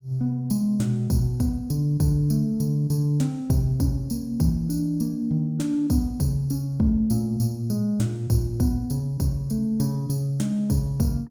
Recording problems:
none

